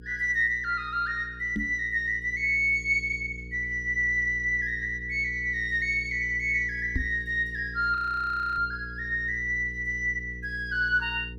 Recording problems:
electrical hum; 60 Hz, harmonics up to 480 Hz, SNR 16 dB
knock on the microphone; at 1.5 s and at 7 s; peak 0 dB vs average level
frozen audio; at 8 s for 0.5 s

